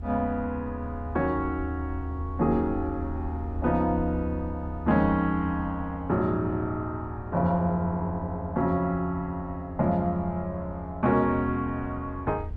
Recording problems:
rumble; below 80 Hz, strongest tone 78 Hz, SNR 9 dB

